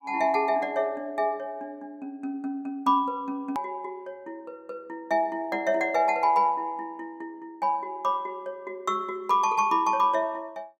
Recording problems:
click at an edit; at 3.5 s

